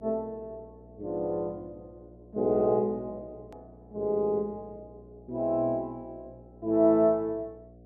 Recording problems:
hum; 60 Hz, harmonics up to 720 Hz, SNR 24 dB
click at an edit; at 3.5 s

